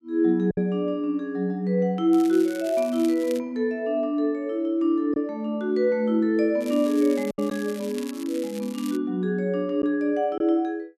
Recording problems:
lost packets; 1.8% of the sound replaced, filled with silence
crackling; from 2 to 3.5 s and from 6.5 to 9 s; loose cable, SNR 19 dB

